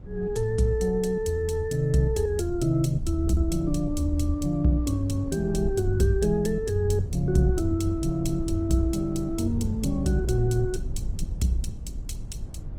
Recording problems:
lossy codec; Opus, log-spectral distance 2 dB, nothing above 19 kHz
low-frequency rumble; below 82 Hz, SNR 10 dB
wind on the microphone; below 170 Hz, SNR 20 dB

